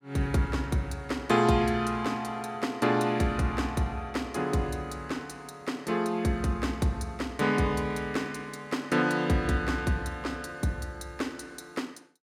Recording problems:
none

